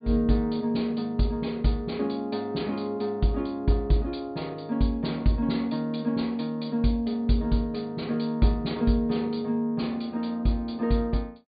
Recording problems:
treble cut off; nothing above 4.7 kHz

